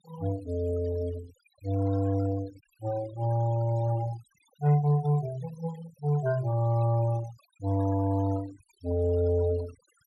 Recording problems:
denoising artefacts; signal-to-artefact ratio 21 dB

